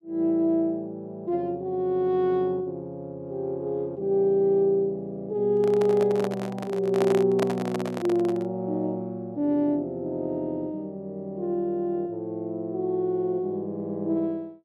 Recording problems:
handling noise; from 5.5 to 8.5 s; peak +1 dB vs average level

